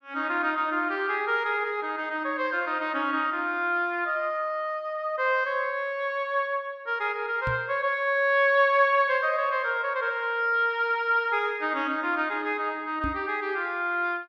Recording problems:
microphone thump; at 7.5 s and at 13 s; peak -2 dB vs average level

